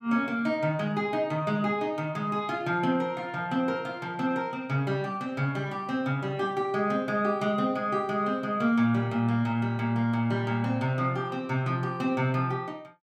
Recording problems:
none

